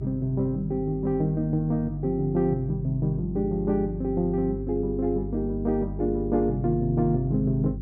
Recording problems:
hum; 50 Hz, harmonics up to 400 Hz, SNR 9 dB

